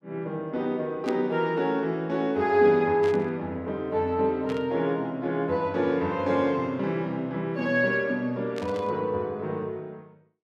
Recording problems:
static burst; 4 times, first at 1 s; peak -9 dB vs average level

